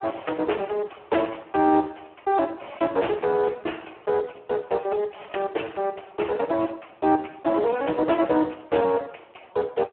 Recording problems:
telephone audio; 280 Hz to 3.1 kHz, Speex

